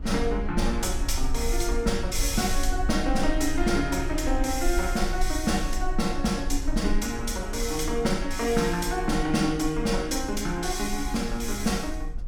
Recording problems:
low-frequency rumble; below 44 Hz, strongest tone 20 Hz, SNR 7 dB

